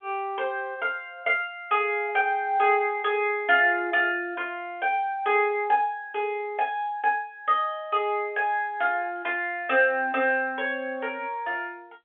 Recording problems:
phone line; 280 Hz to 3.5 kHz, G.711

